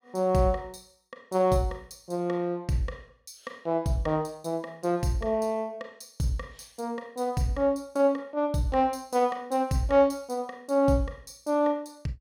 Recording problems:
none

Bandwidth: 16.5 kHz